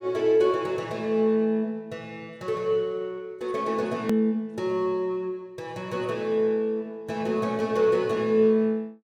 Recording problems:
hard cut with a click; at 4 s

